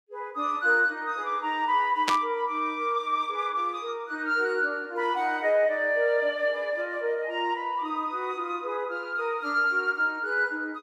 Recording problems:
burst of static; at 2 s; peak +4 dB vs average level

